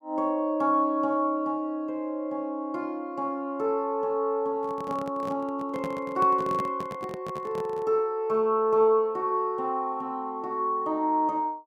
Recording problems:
handling noise; from 4.5 to 8 s; peak -4 dB vs average level

